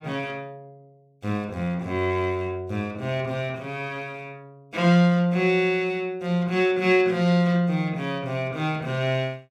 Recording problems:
none

